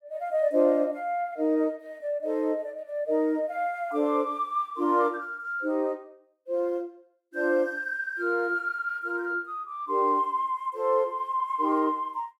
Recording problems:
none

